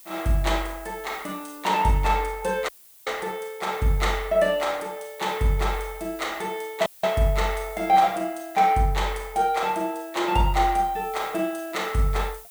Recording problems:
hiss; slope +1 dB per octave, SNR 20 dB
audio cutting out; at 2.5 s and at 7 s

